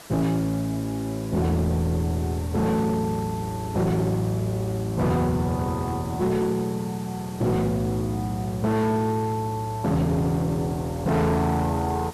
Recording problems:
distortion; hard clipping, signal-to-distortion ratio 10 dB
background hiss; slope -3 dB per octave, SNR 19 dB

